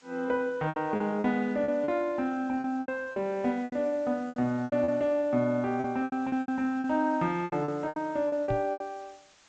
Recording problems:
codec artefacts; G.722, then AAC, log-spectral distance 3 dB
background hiss; slope 0 dB per octave, SNR 30 dB
lost packets; 14% of the sound replaced, filled with repeated pitch periods
microphone thump; at 8.5 s; peak -1 dB vs average level

